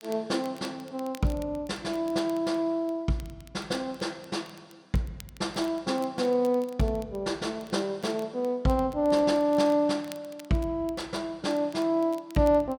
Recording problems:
crackling; vinyl, SNR 24 dB

